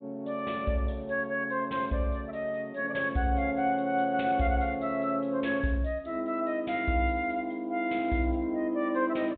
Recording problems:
treble missing; nothing above 4 kHz

